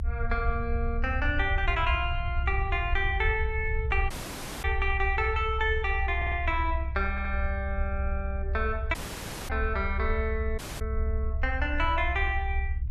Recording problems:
rumble; below 68 Hz, SNR 2 dB
audio cutting out; at 4 s for 0.5 s, at 9 s for 0.5 s and at 11 s
stutter; at 6 s and at 7 s

